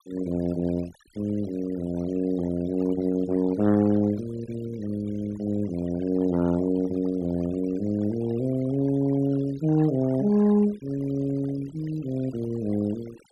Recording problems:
noise reduction artefacts; signal-to-artefact ratio 19 dB

